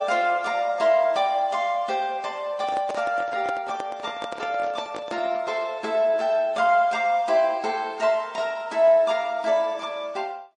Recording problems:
lossy compression; MP3, then MP3, log-spectral distance 2 dB, nothing above 9.5 kHz
microphone handling noise; from 2.5 to 5.5 s; peak -5 dB vs average level

